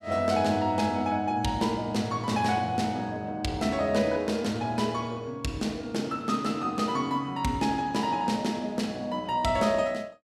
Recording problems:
none

